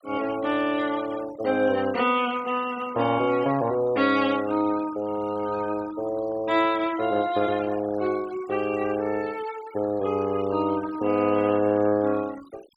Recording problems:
denoising artefacts; signal-to-artefact ratio 19 dB

